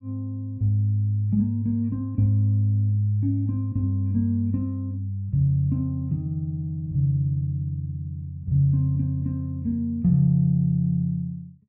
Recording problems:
none

